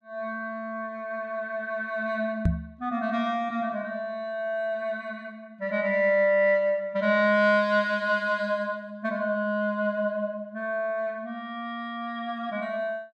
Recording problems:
microphone thump; at 2.5 s; peak +7 dB vs average level

